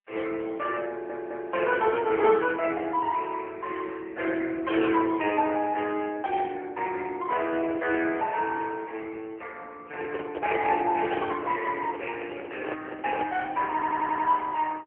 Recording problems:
telephone audio; 280 Hz to 3.1 kHz, AMR-NB
audio stuttering; at 1 s and at 14 s
handling noise; from 10 to 13 s; peak -2 dB vs average level

